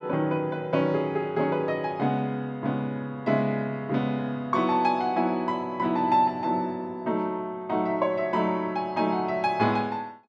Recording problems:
none

